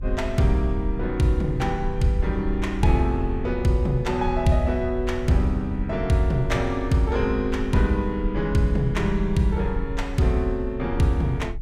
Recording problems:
low-frequency rumble; below 62 Hz, SNR 8 dB

